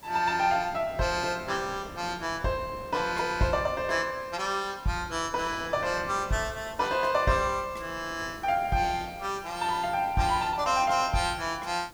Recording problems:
hiss; slope +1 dB per octave, SNR 26 dB
wind on the microphone; below 650 Hz, SNR 19 dB

